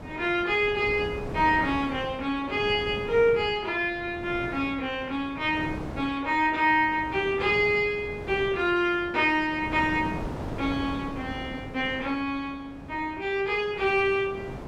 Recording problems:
wind on the microphone; below 580 Hz, SNR 13 dB

